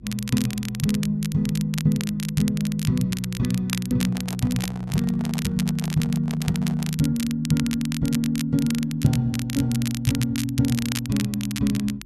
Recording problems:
hum; 50 Hz, harmonics up to 350 Hz, SNR 24 dB
crackle; vinyl, SNR 10 dB
microphone handling noise; from 4 to 7 s; peak -8 dB vs average level

